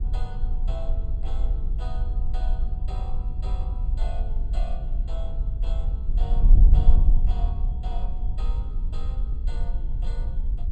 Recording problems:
wind noise; below 50 Hz, SNR -17 dB

